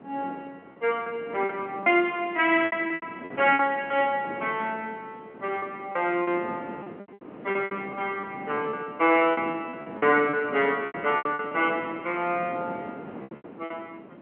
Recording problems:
phone line; 240 Hz to 3.2 kHz, G.711
wind on the microphone; below 600 Hz, SNR 16 dB
lost packets; 11% of the sound replaced, filled with repeated pitch periods

